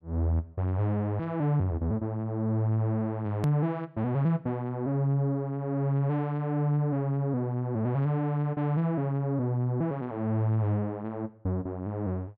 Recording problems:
hard cut with a click; at 3.5 s

